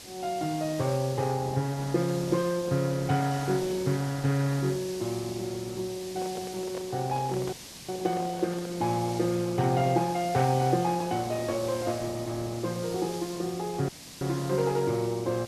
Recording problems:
codec artefacts; Opus, log-spectral distance 3 dB
hiss; SNR 13 dB
handling noise; from 6 to 9 s; peak -8 dB vs average level
dropout; at 7.5 s and at 14 s

